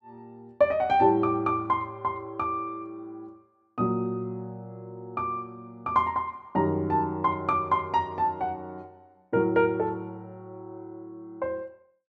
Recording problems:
none

